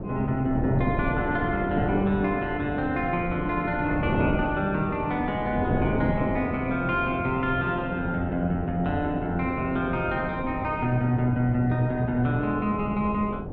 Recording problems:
wind on the microphone; below 410 Hz, SNR 5 dB

